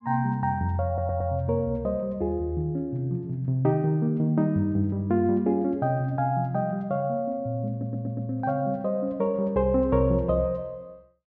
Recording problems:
audio stuttering; at 1 s and at 7.5 s

